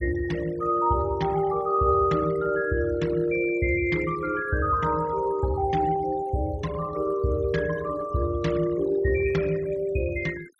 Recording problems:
noise reduction artefacts; signal-to-artefact ratio 18 dB

